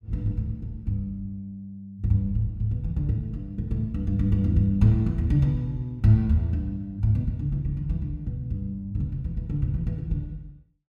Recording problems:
none

